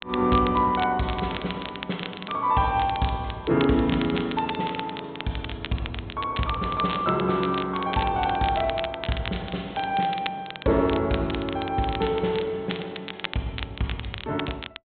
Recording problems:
treble missing; nothing above 4 kHz
crackling; vinyl, SNR 11 dB

